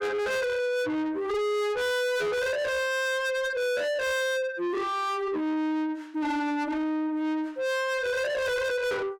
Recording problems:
distorted audio; soft clipping, signal-to-distortion ratio 6 dB

